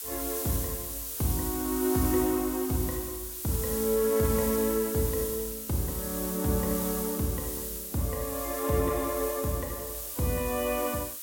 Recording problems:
hiss; slope +2 dB per octave, SNR 4 dB

